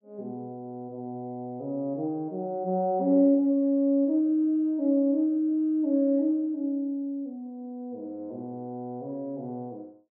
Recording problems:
none

